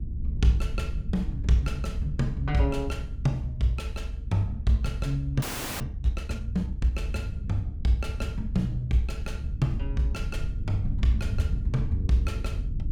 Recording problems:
low-frequency rumble; below 76 Hz, SNR 5 dB
frozen audio; at 5.5 s

